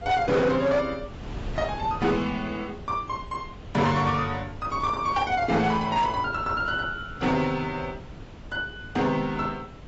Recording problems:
lossy codec; AAC, log-spectral distance 2 dB, nothing above 7.6 kHz
distorted audio; hard clipping, signal-to-distortion ratio 11 dB
wind noise; below 320 Hz, SNR 15 dB

